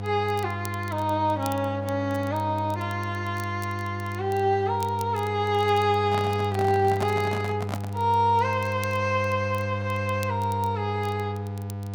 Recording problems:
mains hum; 50 Hz, harmonics up to 1 kHz, SNR 6 dB
crackle; vinyl, SNR 22 dB
handling noise; from 6 to 8 s; peak 0 dB vs average level

